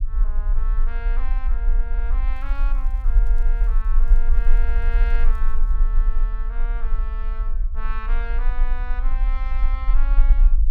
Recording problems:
rumble; below 36 Hz, strongest tone 20 Hz, SNR -14 dB
crackling; from 2.5 to 5.5 s; loose cable, SNR 25 dB

